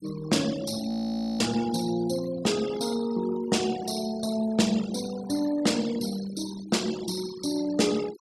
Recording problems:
denoising artefacts; signal-to-artefact ratio 15 dB
frozen audio; at 1 s for 0.5 s

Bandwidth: 14.5 kHz